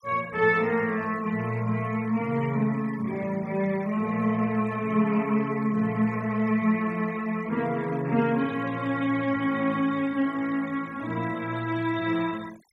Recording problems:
denoising artefacts; signal-to-artefact ratio 22 dB

